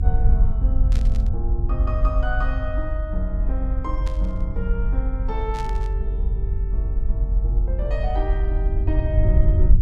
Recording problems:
low-frequency rumble; below 60 Hz, strongest tone 46 Hz, SNR -9 dB
static burst; at 1 s, at 4 s and at 5.5 s; peak -3 dB vs average level

